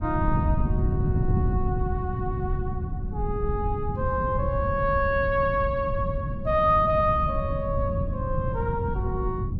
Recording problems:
wind noise; below 140 Hz, SNR 2 dB

